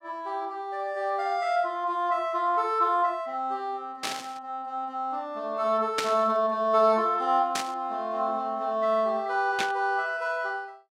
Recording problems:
static burst; 4 times, first at 4 s; peak +3 dB vs average level

